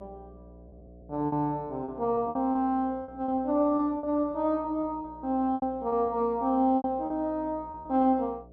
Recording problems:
hum; 60 Hz, harmonics up to 720 Hz, SNR 23 dB
packet loss; 10% of the sound replaced, filled with repeated pitch periods

